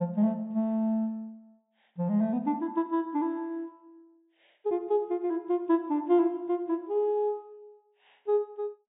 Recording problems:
low-pass filter; nothing above 4 kHz

